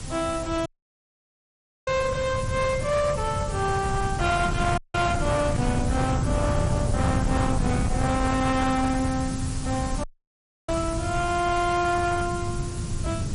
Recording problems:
lossy compression; MP3, log-spectral distance 11 dB
distortion; hard clipping, signal-to-distortion ratio 12 dB
background hiss; slope -1 dB per octave, SNR 13 dB
wind on the microphone; below 180 Hz, SNR 3 dB
audio cutting out; at 0.5 s for 1 s, at 5 s and at 10 s for 0.5 s

